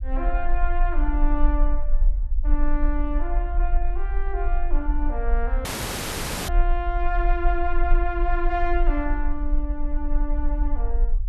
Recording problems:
low-frequency rumble; below 40 Hz, strongest tone 20 Hz, SNR -3 dB
audio cutting out; at 5.5 s for 1 s

